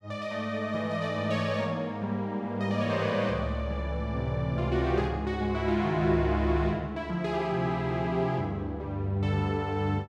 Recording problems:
none

